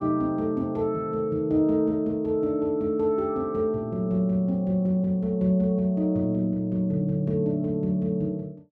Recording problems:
none

